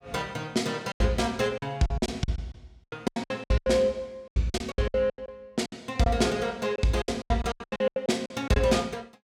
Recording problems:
lost packets; 19% of the sound replaced, filled with silence

